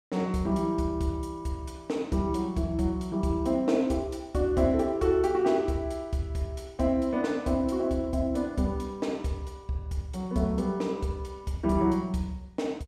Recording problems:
none

